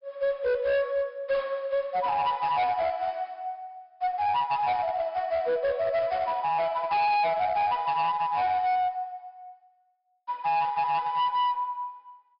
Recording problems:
treble cut off; nothing above 5.5 kHz
distortion; hard clipping, uneven, signal-to-distortion ratio 10 dB

